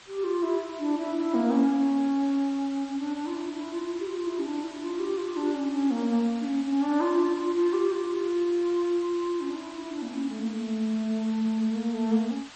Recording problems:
codec artefacts; MP3, log-spectral distance 2 dB, nothing above 8 kHz
hiss; SNR 18 dB

